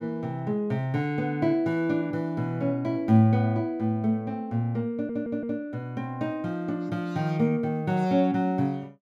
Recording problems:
stutter; at 5 s

